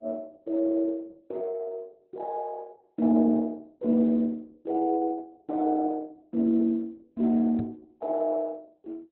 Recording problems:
lossy compression; Opus, log-spectral distance 2 dB, nothing above 4 kHz
knock on the microphone; at 7.5 s; peak -2 dB vs average level

